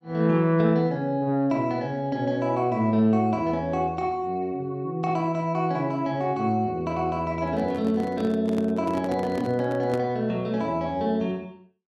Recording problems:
handling noise; from 7.5 to 10 s; peak -3 dB vs average level

